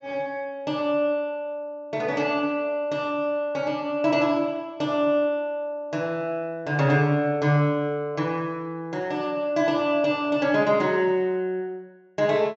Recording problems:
low-pass filter; nothing above 8 kHz

